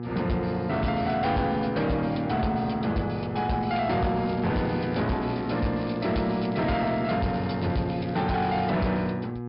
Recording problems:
low-pass filter; nothing above 5.5 kHz
distorted audio; hard clipping, signal-to-distortion ratio 11 dB
electrical hum; 60 Hz, harmonics up to 1.3 kHz, SNR 8 dB
crackling; from 4 to 8 s; loose cable, SNR 24 dB

